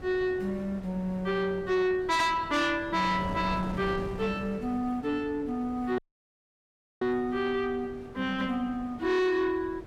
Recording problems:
distortion; soft clipping, signal-to-distortion ratio 11 dB
wind on the microphone; below 490 Hz, SNR 14 dB
dropout; at 6 s for 1 s

